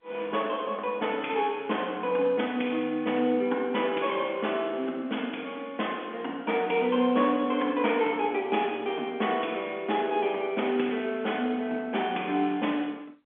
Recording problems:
phone line; 220 Hz to 3.5 kHz, G.711

